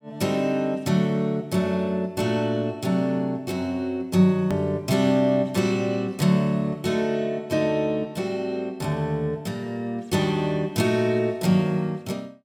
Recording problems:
edit click; at 4.5 s

